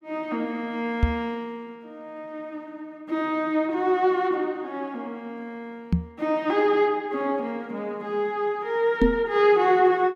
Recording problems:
microphone bump; at 1 s, at 6 s and at 9 s; peak +7 dB vs average level

